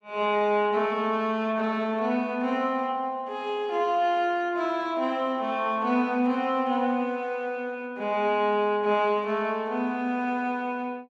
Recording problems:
none

